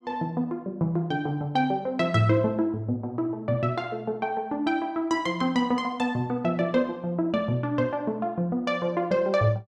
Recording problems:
none

